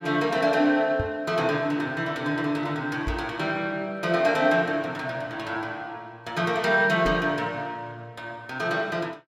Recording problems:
microphone bump; at 1 s, at 3 s and at 7 s; peak -1 dB vs average level

